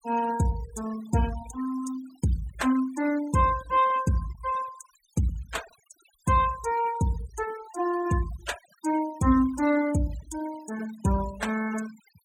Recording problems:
noise reduction artefacts; signal-to-artefact ratio 18 dB

